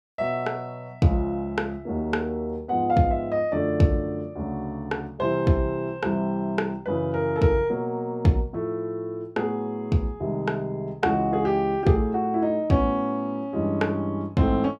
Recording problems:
none

